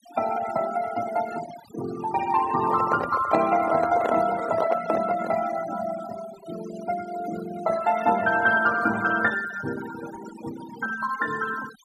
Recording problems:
denoising artefacts; signal-to-artefact ratio 13 dB
microphone handling noise; from 2.5 to 5.5 s; peak +1 dB vs average level

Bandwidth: 14 kHz